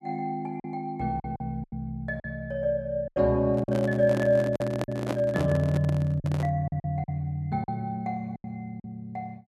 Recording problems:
lost packets; 8% of the sound replaced, filled with silence
handling noise; from 3.5 to 6.5 s; peak +2 dB vs average level

